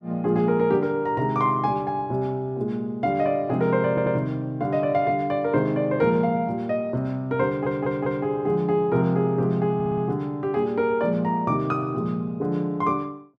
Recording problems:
stutter; at 4 s, at 7.5 s and at 9.5 s

